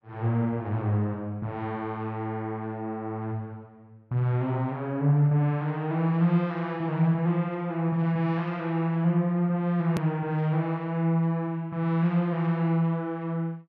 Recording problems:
edit click; at 10 s

